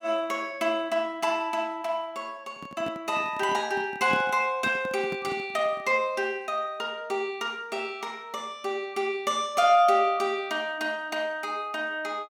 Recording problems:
microphone handling noise; from 2.5 to 6 s; peak -1 dB vs average level

